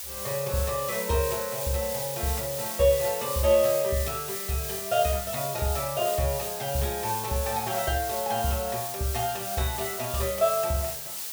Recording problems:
hiss; slope +2 dB per octave, SNR 4 dB

